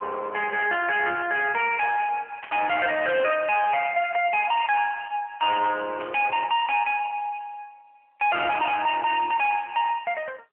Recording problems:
phone line; 340 Hz to 3.3 kHz, AMR-NB
distortion; hard clipping, uneven, signal-to-distortion ratio 11 dB
burst of static; at 2.5 s and at 6 s; peak -11 dB vs average level

